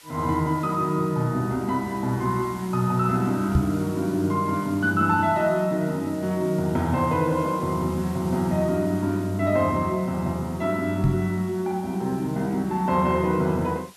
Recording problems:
hiss; slope 0 dB per octave, SNR 22 dB
microphone bump; at 3.5 s and at 11 s; peak +7 dB vs average level

